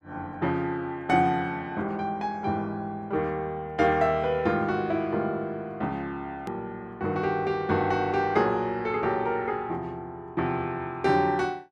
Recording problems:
edit click; at 6.5 s

